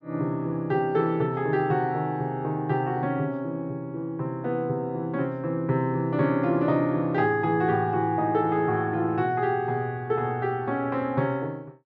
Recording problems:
low-pass filter; nothing above 7.3 kHz

